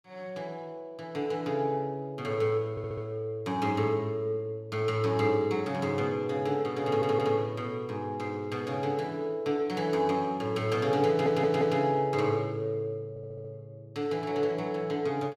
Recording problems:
stutter; 4 times, first at 2.5 s

